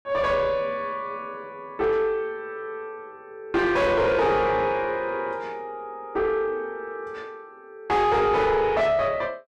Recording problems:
distortion; soft clipping, signal-to-distortion ratio 6 dB

